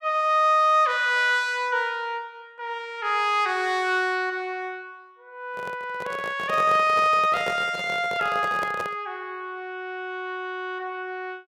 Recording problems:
microphone handling noise; from 5.5 to 9 s; peak -3 dB vs average level

